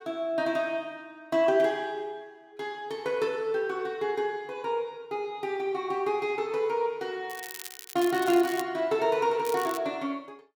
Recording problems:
crackle; from 7.5 to 8.5 s and at 9.5 s; loose cable, SNR 13 dB

